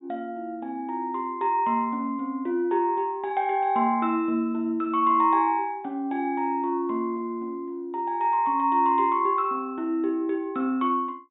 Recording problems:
low-pass filter; nothing above 4 kHz

